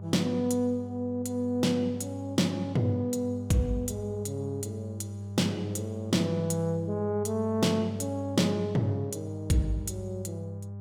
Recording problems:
hum; 50 Hz, harmonics up to 800 Hz, SNR 9 dB

